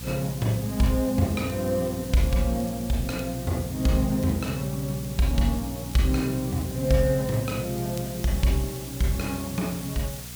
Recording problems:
electrical hum; 60 Hz, harmonics up to 480 Hz, SNR 11 dB
hiss; slope +1 dB per octave, SNR 13 dB
crackle; vinyl, SNR 28 dB

